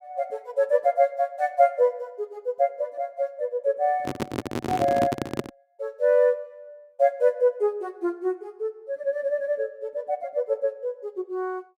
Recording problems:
microphone handling noise; from 4 to 5.5 s; peak +3 dB vs average level

